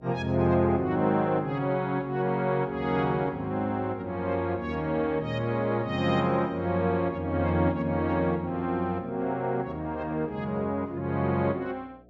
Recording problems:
hum; 60 Hz, harmonics up to 720 Hz, SNR 26 dB

